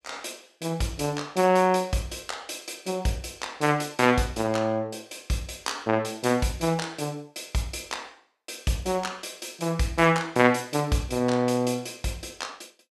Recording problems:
none

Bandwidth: 14.5 kHz